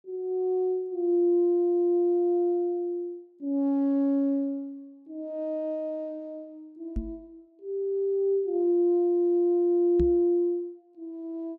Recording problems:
microphone thump; at 7 s and at 10 s; peak -2 dB vs average level

